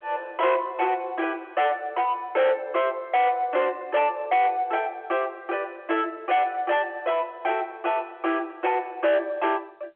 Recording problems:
telephone audio; 300 Hz to 3.7 kHz, G.711
distortion; soft clipping, signal-to-distortion ratio 7 dB

